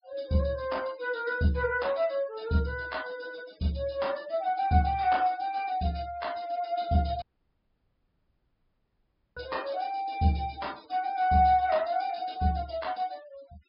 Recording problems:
low-pass filter; nothing above 5.5 kHz
noise reduction artefacts; signal-to-artefact ratio 23 dB
audio cutting out; at 7 s for 2 s

